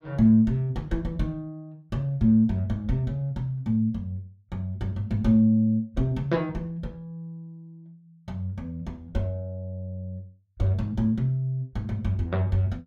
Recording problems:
none

